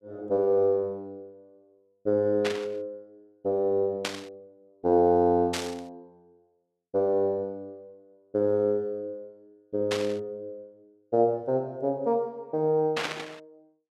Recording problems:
static burst; 5 times, first at 2.5 s; peak +1 dB vs average level

